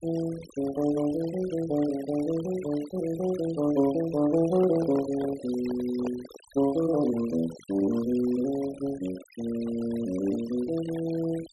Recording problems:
noise reduction artefacts; signal-to-artefact ratio 17 dB
handling noise; from 4.5 to 6.5 s; peak -4 dB vs average level

